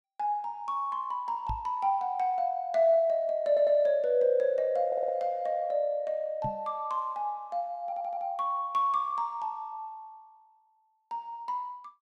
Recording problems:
microphone bump; at 1.5 s and at 6.5 s; peak -4 dB vs average level
stutter; at 3.5 s, at 5 s and at 8 s

